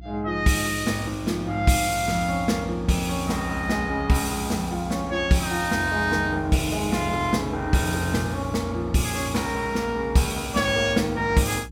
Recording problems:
hum; 60 Hz, harmonics up to 360 Hz, SNR 16 dB

